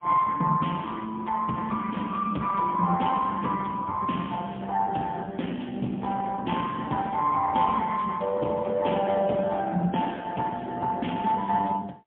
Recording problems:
phone line; 170 Hz to 3.3 kHz, AMR-NB, then MP3

